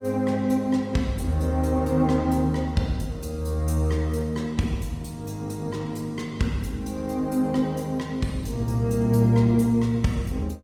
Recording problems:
lossy compression; Opus, log-spectral distance 2 dB

